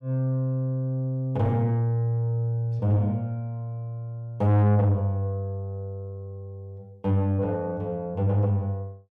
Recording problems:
distorted audio; soft clipping, signal-to-distortion ratio 6 dB

